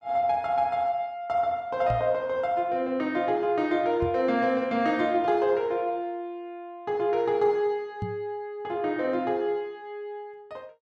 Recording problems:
knock on the microphone; at 2 s, at 4 s and at 8 s; peak -2 dB vs average level

